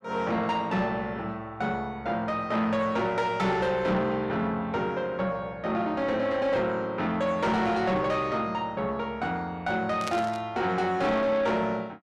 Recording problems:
distorted audio; soft clipping, signal-to-distortion ratio 11 dB
static burst; at 10 s; peak -3 dB vs average level

